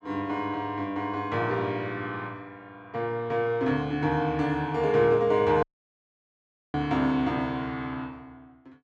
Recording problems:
dropout; at 5.5 s for 1 s

